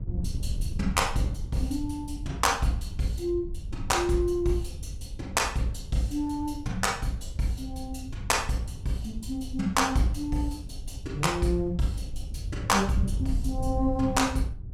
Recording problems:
wind noise; below 94 Hz, SNR 8 dB

